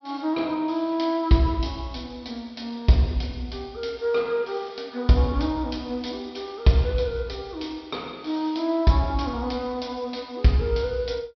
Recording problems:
low-pass filter; nothing above 5.5 kHz

